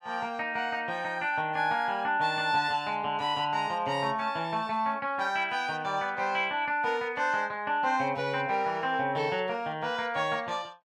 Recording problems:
none

